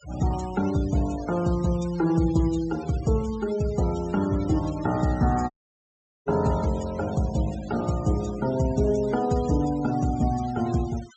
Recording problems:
treble missing; nothing above 8 kHz
denoising artefacts; signal-to-artefact ratio 19 dB
audio cutting out; at 5.5 s for 1 s

